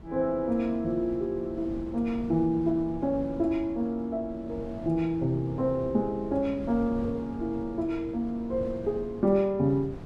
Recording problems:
wind noise; below 280 Hz, SNR 14 dB

